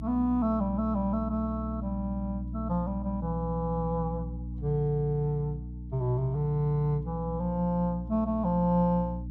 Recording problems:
hum; 60 Hz, harmonics up to 300 Hz, SNR 8 dB

